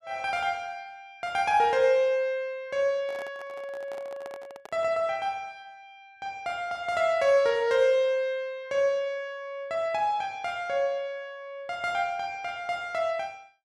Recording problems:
microphone handling noise; from 3 to 5 s; peak -11 dB vs average level

